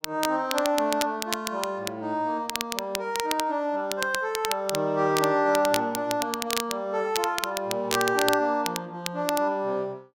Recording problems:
crackling; vinyl, SNR 6 dB

